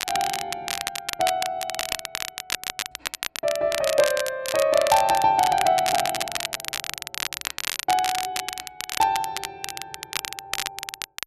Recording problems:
crackling; vinyl, SNR 6 dB

